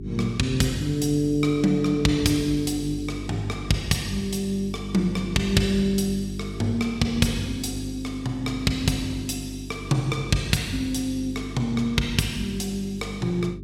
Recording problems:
electrical hum; 50 Hz, harmonics up to 400 Hz, SNR 11 dB

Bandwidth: 16 kHz